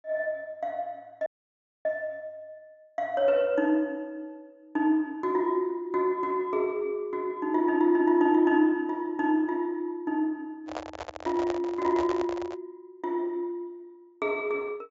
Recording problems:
low-pass filter; nothing above 7.5 kHz
audio cutting out; at 1.5 s for 0.5 s
microphone handling noise; from 11 to 13 s; peak -3 dB vs average level

